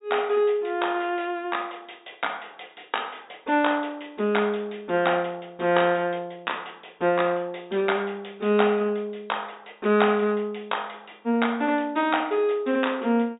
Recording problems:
low-pass filter; nothing above 4 kHz

